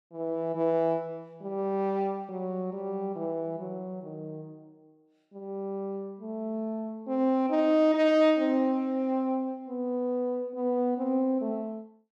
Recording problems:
none

